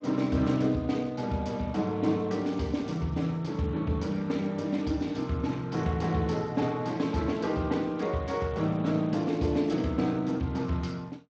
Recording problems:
lossy compression; Speex, log-spectral distance 3 dB

